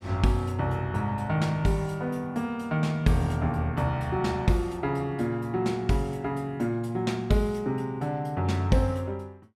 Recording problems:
none

